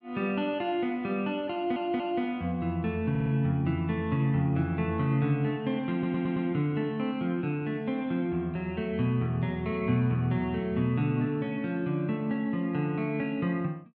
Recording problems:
audio stuttering; at 1.5 s, at 3 s and at 6 s

